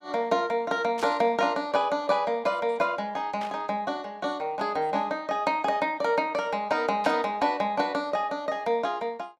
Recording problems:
static burst; at 1 s, at 3.5 s and at 7 s; peak -7 dB vs average level

